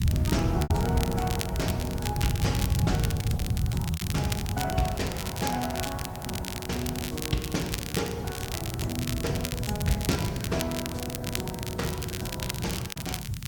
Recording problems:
codec artefacts; Opus, log-spectral distance 3 dB, nothing above 15.5 kHz
background hiss; slope 0 dB per octave, SNR 18 dB
low-frequency rumble; below 150 Hz, SNR -2 dB
crackle; vinyl, SNR 3 dB
lost packets; 3% of the sound replaced, filled with repeated pitch periods

